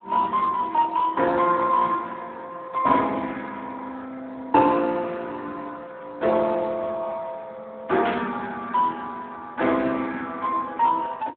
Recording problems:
phone line; 220 Hz to 3.8 kHz, Speex
burst of static; at 8 s; peak -3 dB vs average level

